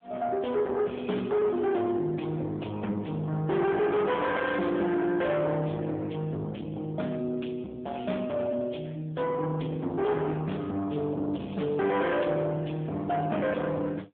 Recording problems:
telephone audio; 130 Hz to 3.5 kHz, AMR-NB
distortion; soft clipping, signal-to-distortion ratio 8 dB

